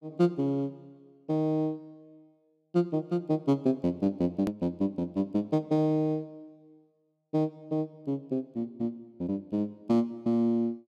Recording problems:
click at an edit; at 4.5 s

